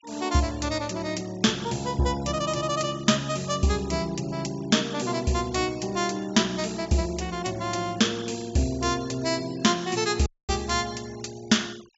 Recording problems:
treble cut off; nothing above 8 kHz
denoising artefacts; signal-to-artefact ratio 23 dB
audio cutting out; at 10 s

